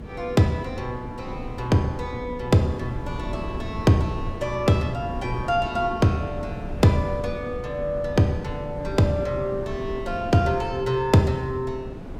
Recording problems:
hum; 60 Hz, harmonics up to 420 Hz, SNR 19 dB
wind noise; below 280 Hz, SNR 11 dB

